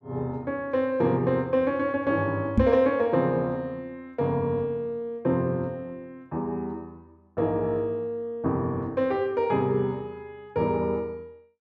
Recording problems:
knock on the microphone; at 2.5 s; peak +9 dB vs average level

